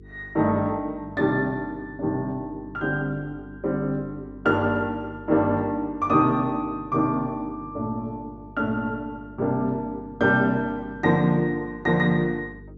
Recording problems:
treble missing; nothing above 8 kHz
hum; 50 Hz, harmonics up to 450 Hz, SNR 21 dB

